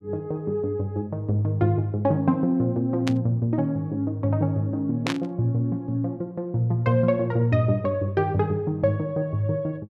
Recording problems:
burst of static; at 3 s and at 5 s; peak 0 dB vs average level

